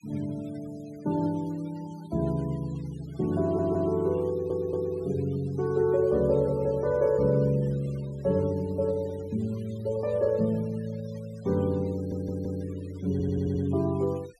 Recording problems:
noise reduction artefacts; signal-to-artefact ratio 24 dB
stutter; 4 times, first at 3.5 s

